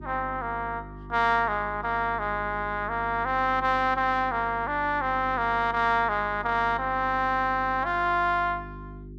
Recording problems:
mains hum; 50 Hz, harmonics up to 400 Hz, SNR 17 dB

